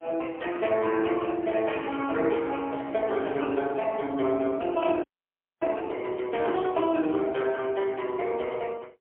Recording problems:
telephone audio; 240 Hz to 3.3 kHz, AMR-NB, then MP3
frozen audio; at 5 s for 0.5 s

